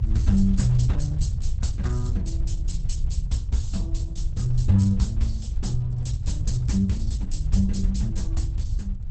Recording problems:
codec artefacts; Opus, log-spectral distance 2 dB, nothing above 8.2 kHz
low-frequency rumble; below 78 Hz, SNR 3 dB

